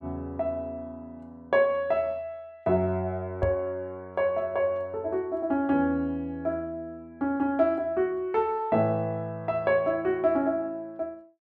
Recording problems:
microphone bump; at 3.5 s; peak +2 dB vs average level

